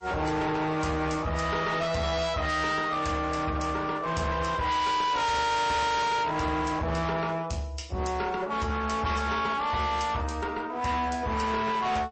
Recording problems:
codec artefacts; MP3, then MP3, log-spectral distance 3 dB, nothing above 8 kHz
distortion; hard clipping, uneven, signal-to-distortion ratio 5 dB

